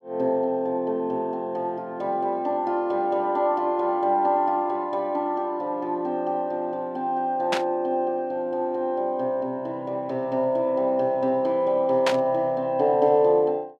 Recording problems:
static burst; at 7.5 s and at 12 s; peak +3 dB vs average level

